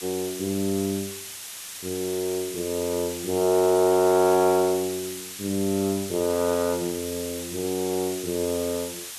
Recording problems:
hiss; slope +3 dB per octave, SNR 10 dB

